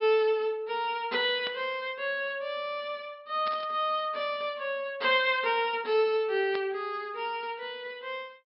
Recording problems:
treble cut off; nothing above 5.3 kHz
static burst; at 1.5 s, at 3.5 s and at 6.5 s; peak -7 dB vs average level

